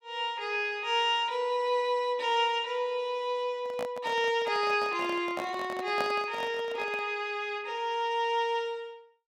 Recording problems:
microphone handling noise; from 3.5 to 7 s; peak -2 dB vs average level

